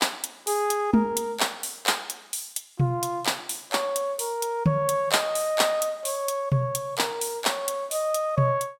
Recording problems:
none

